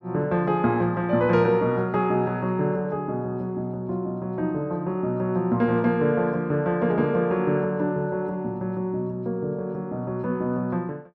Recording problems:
none

